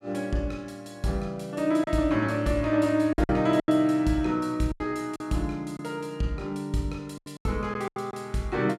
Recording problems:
packet loss; 7% of the sound replaced, filled with silence

